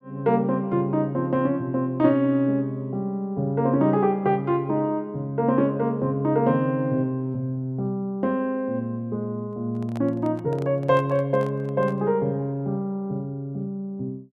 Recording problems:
handling noise; from 9.5 to 12 s; peak -10 dB vs average level

